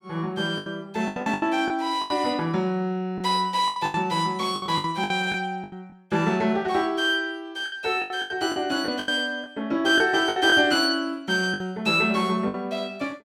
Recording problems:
packet loss; 11% of the sound replaced, filled with the last packet

